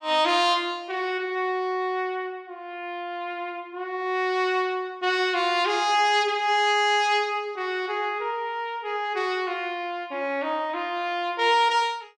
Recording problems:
none

